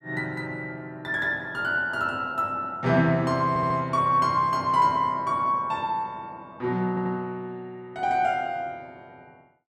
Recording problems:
stutter; at 3.5 s and at 7 s

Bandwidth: 14 kHz